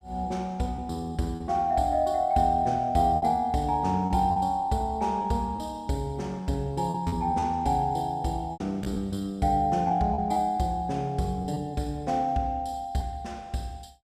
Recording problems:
lost packets; 5% of the sound replaced, filled with repeated pitch periods

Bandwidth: 14.5 kHz